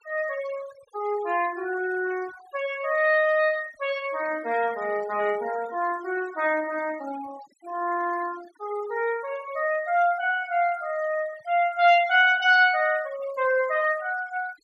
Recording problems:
denoising artefacts; signal-to-artefact ratio 20 dB

